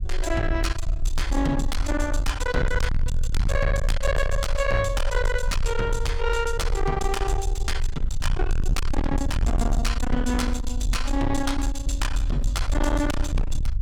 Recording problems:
distortion; soft clipping, signal-to-distortion ratio 6 dB
low-frequency rumble; below 64 Hz, SNR 1 dB

